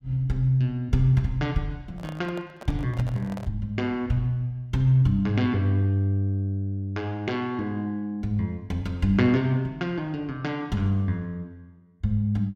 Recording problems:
microphone handling noise; from 2 to 3.5 s; peak -10 dB vs average level

